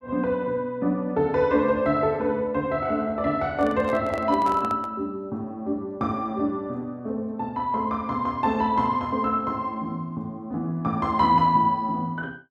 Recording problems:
handling noise; from 3.5 to 5 s; peak -6 dB vs average level

